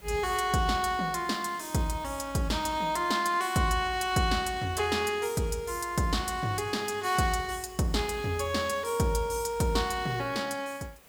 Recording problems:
background hiss; slope -3 dB per octave, SNR 25 dB

